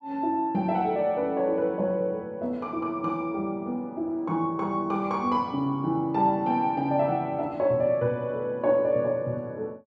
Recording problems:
none

